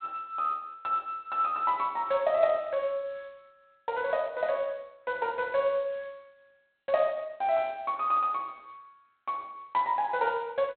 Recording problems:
phone line; 260 Hz to 4 kHz, G.726

